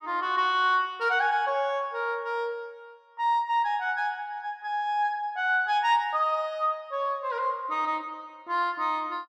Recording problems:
none

